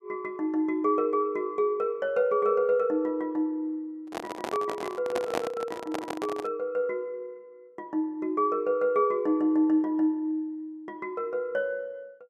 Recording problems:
microphone handling noise; from 4 to 6.5 s; peak +1 dB vs average level

